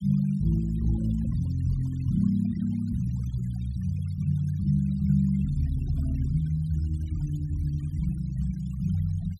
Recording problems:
noise reduction artefacts; signal-to-artefact ratio 24 dB

